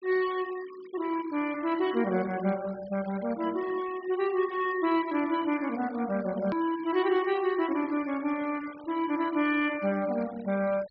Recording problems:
treble cut off; nothing above 5.5 kHz
denoising artefacts; signal-to-artefact ratio 19 dB
edit click; at 6.5 s

